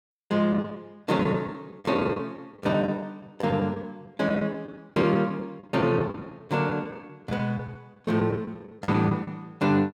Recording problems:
lost packets; 13% of the sound replaced, filled with the last packet

